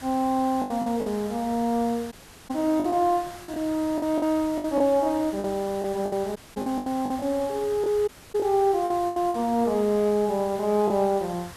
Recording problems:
background hiss; SNR 18 dB
lost packets; 9% of the sound replaced, filled with the last packet
dropout; at 2 s, at 6.5 s and at 8 s

